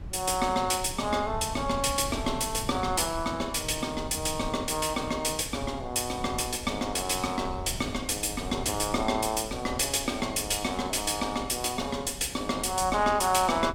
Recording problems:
wind noise; below 140 Hz, SNR 14 dB

